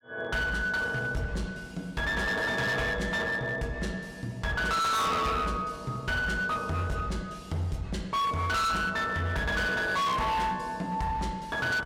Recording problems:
distortion; hard clipping, signal-to-distortion ratio 6 dB

